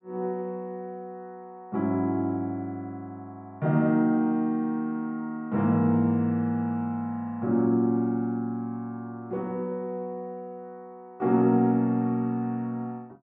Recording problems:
none

